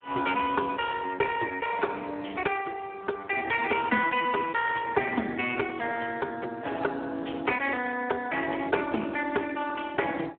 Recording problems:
telephone audio; 260 Hz to 3.4 kHz, Speex

